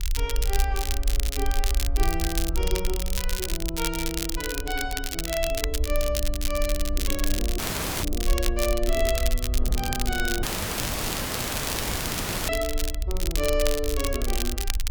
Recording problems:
low-frequency rumble; below 54 Hz, SNR 0 dB
wind on the microphone; below 340 Hz, SNR 17 dB
crackling; vinyl, SNR 1 dB
dropout; at 7.5 s and at 10 s for 2 s

